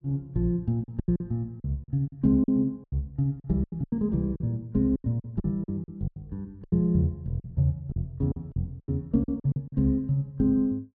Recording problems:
lost packets; 13% of the sound replaced, filled with silence

